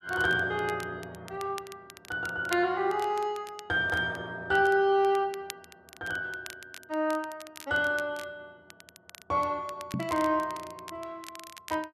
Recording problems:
crackle; vinyl, SNR 18 dB
knock on the microphone; at 10 s; peak 0 dB vs average level

